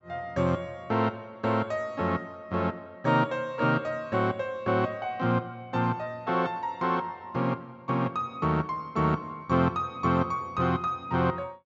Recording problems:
treble missing; nothing above 8 kHz

